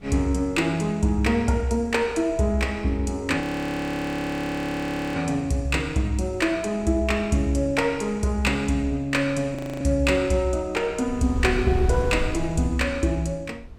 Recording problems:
wind noise; below 130 Hz, SNR 15 dB
audio freezing; at 3.5 s for 2 s and at 9.5 s

